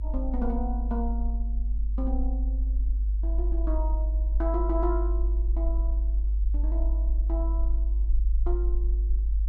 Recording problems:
rumble; below 52 Hz, strongest tone 50 Hz, SNR -8 dB

